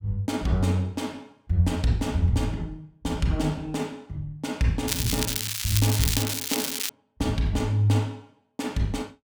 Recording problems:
crackling; from 5 to 7 s; loose cable, SNR 0 dB

